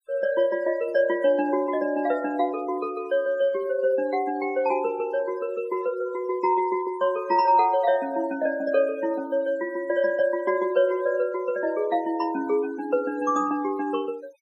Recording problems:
noise reduction artefacts; signal-to-artefact ratio 23 dB

